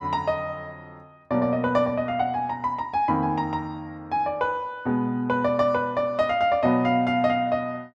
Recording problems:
none

